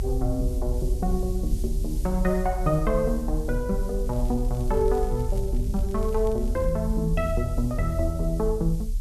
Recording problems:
hiss; slope +7 dB per octave, SNR 20 dB
low-frequency rumble; below 52 Hz, strongest tone 32 Hz, SNR 3 dB
crackling; from 4 to 6.5 s; loose cable, SNR 27 dB

